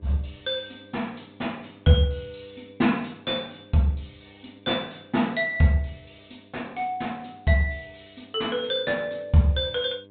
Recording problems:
treble missing; nothing above 4 kHz
hum; 50 Hz, harmonics up to 1.1 kHz, SNR 27 dB

